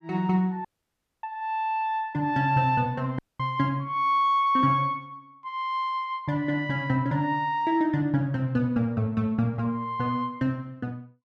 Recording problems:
audio cutting out; at 0.5 s for 0.5 s and at 3 s

